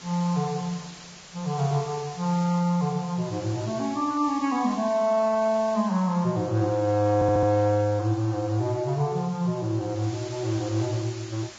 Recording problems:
lossy compression; Vorbis, log-spectral distance 6 dB
hiss; slope -1 dB per octave, SNR 18 dB
audio stuttering; at 7 s

